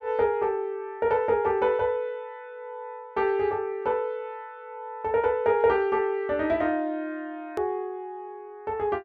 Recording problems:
hard cut with a click; at 7.5 s

